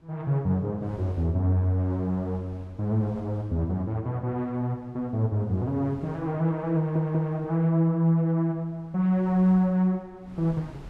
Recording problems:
wind noise; below 370 Hz, SNR 26 dB
stutter; at 7 s

